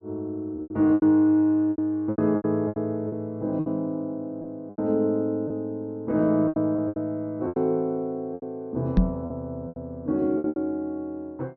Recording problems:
treble missing; nothing above 6.3 kHz
lost packets; 11% of the sound replaced, filled with repeated pitch periods
microphone bump; at 9 s; peak +9 dB vs average level

